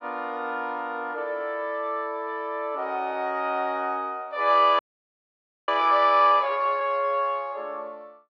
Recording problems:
frozen audio; at 5 s for 1 s

